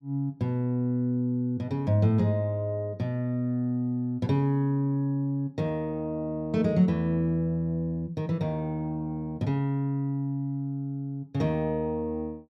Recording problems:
none

